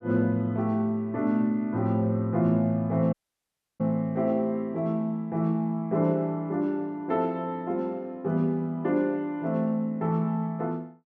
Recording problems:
dropout; at 3 s for 0.5 s

